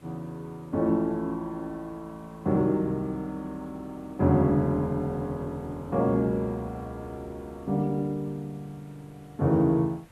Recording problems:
background hiss; SNR 28 dB

